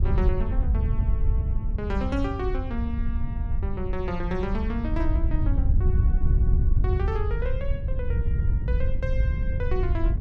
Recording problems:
wind on the microphone; below 80 Hz, SNR -7 dB

